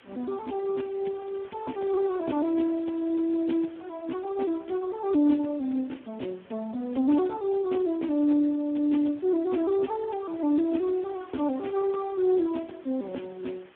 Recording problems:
phone line; 190 Hz to 3.4 kHz, Speex
hiss; SNR 26 dB

